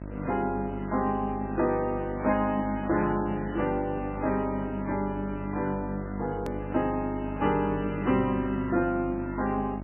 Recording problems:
lossy compression; MP3, log-spectral distance 2 dB, nothing above 2.5 kHz
hum; 50 Hz, harmonics up to 1.3 kHz, SNR 8 dB
click at an edit; at 6.5 s

